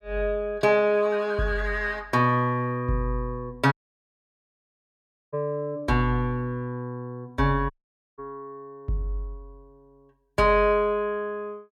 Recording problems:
dropout; at 3.5 s for 1.5 s and at 7.5 s

